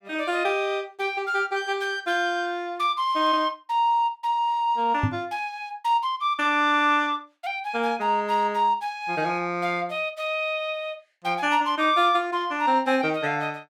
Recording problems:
microphone bump; at 5 s; peak +4 dB vs average level

